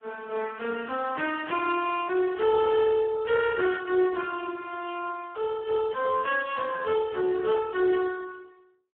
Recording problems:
telephone audio; 260 Hz to 3.6 kHz, Speex

